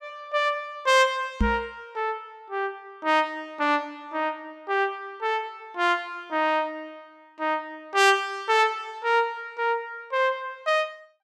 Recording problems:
microphone thump; at 1.5 s; peak +5 dB vs average level

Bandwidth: 14.5 kHz